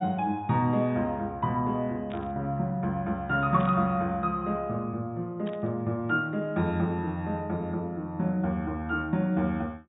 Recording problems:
treble missing; nothing above 4 kHz
static burst; at 2 s, at 3.5 s and at 5.5 s; peak -12 dB vs average level

